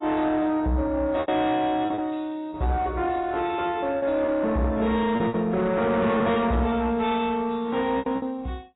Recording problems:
codec artefacts; AAC, log-spectral distance 2 dB, nothing above 3.8 kHz
distortion; soft clipping, signal-to-distortion ratio 11 dB
lost packets; 6% of the sound replaced, filled with repeated pitch periods

